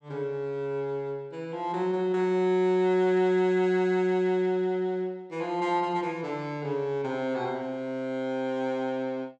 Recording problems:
none

